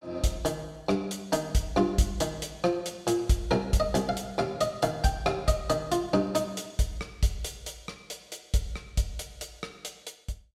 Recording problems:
none

